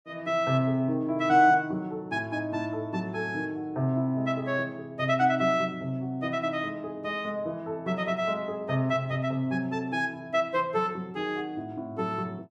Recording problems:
none

